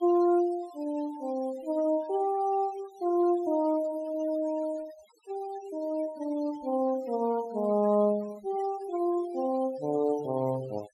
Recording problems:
denoising artefacts; signal-to-artefact ratio 22 dB

